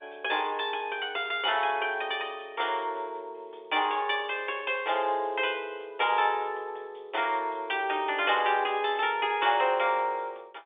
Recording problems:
phone line; 340 Hz to 3.6 kHz, G.711

